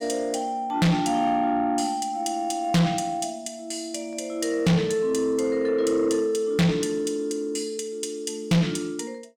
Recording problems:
distorted audio; soft clipping, signal-to-distortion ratio 6 dB

